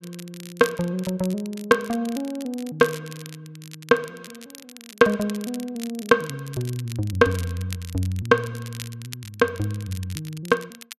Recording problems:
crackling; vinyl, SNR 17 dB

